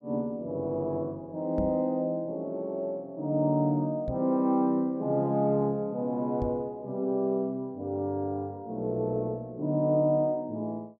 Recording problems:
microphone bump; at 1.5 s, at 4 s and at 6.5 s; peak -1 dB vs average level

